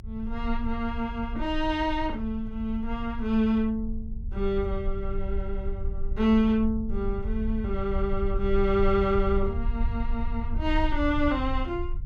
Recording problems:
rumble; below 62 Hz, strongest tone 22 Hz, SNR 6 dB

